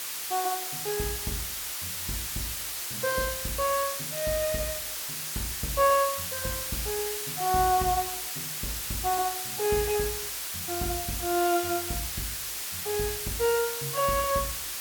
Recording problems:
background hiss; slope +2 dB per octave, SNR 2 dB

